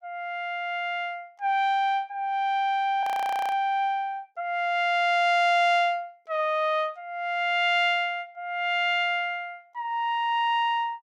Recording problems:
audio freezing; at 3 s

